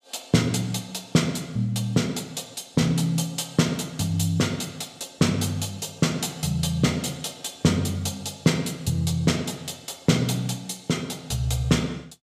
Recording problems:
none

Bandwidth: 15.5 kHz